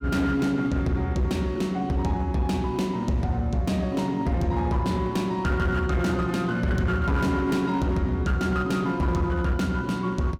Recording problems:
distorted audio; hard clipping, uneven, signal-to-distortion ratio 11 dB

